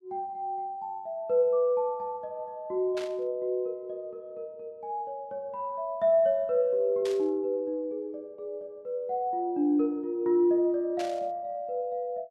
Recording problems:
static burst; at 3 s, at 7 s and at 11 s; peak -7 dB vs average level

